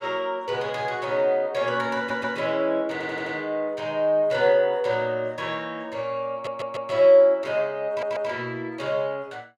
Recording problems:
audio stuttering; 4 times, first at 2 s

